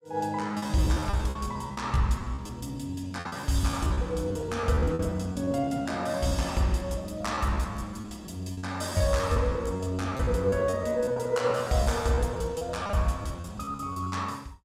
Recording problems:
packet loss; 16% of the sound replaced, filled with repeated pitch periods

